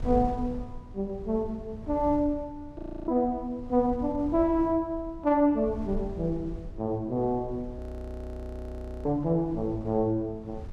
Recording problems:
wind on the microphone; below 100 Hz, SNR 14 dB
audio freezing; at 3 s and at 8 s for 1.5 s

